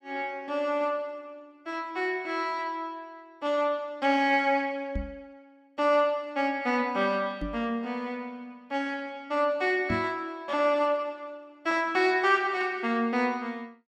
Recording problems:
knock on the microphone; at 5 s, at 7.5 s and at 10 s; peak 0 dB vs average level

